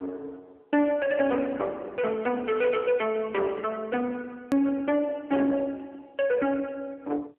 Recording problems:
phone line; 240 Hz to 2.9 kHz, AMR-NB
distorted audio; soft clipping, signal-to-distortion ratio 10 dB
edit click; at 4.5 s

